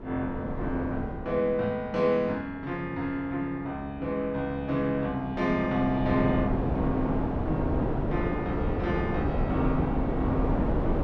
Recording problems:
wind on the microphone; below 450 Hz, SNR 1 dB

